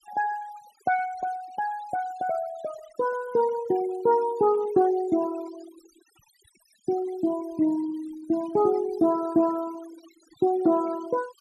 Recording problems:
noise reduction artefacts; signal-to-artefact ratio 20 dB

